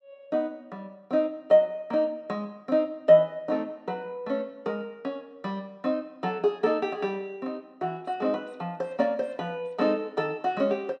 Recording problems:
none

